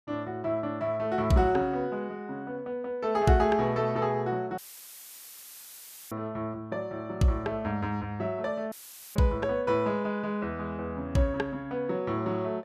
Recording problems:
audio cutting out; at 4.5 s for 1.5 s and at 8.5 s; filled with static

